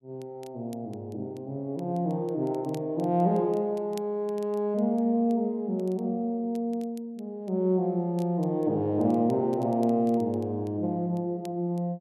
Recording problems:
crackling; vinyl, SNR 29 dB

